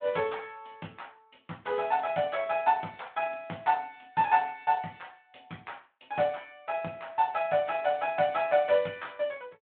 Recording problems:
phone line; 220 Hz to 3.5 kHz, Speex

